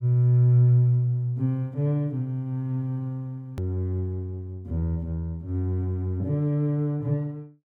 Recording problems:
edit click; at 3.5 s

